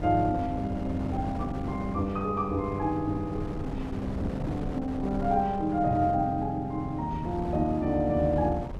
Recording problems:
wind on the microphone; below 340 Hz, SNR 8 dB

